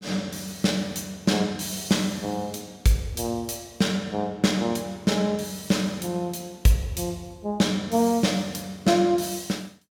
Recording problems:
none

